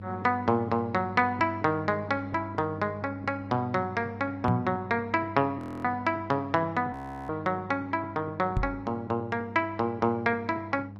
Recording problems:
lossy codec; Opus, log-spectral distance 2 dB, nothing above 13.1 kHz
hum; 50 Hz, harmonics up to 500 Hz, SNR 13 dB
microphone thump; at 4.5 s and at 8.5 s; peak +5 dB vs average level
frozen audio; at 5.5 s and at 7 s

